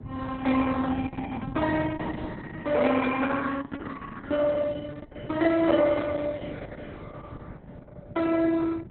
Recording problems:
codec artefacts; Opus, log-spectral distance 4 dB, nothing above 3.9 kHz
wind noise; below 210 Hz, SNR 14 dB

